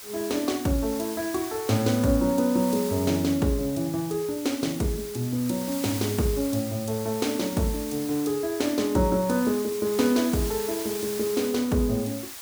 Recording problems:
background hiss; slope +1 dB per octave, SNR 11 dB

